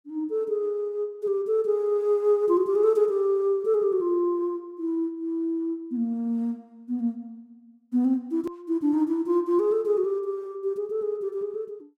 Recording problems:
edit click; at 8.5 s

